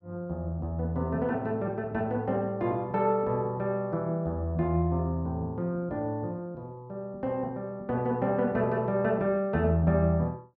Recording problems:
none

